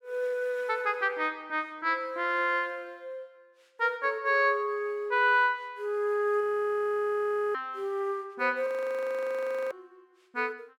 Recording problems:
frozen audio; at 6.5 s for 1 s and at 8.5 s for 1 s

